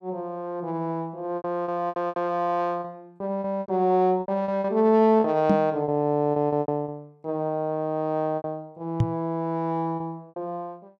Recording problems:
packet loss; 10% of the sound replaced, filled with repeated pitch periods
microphone bump; at 5.5 s and at 9 s; peak +7 dB vs average level

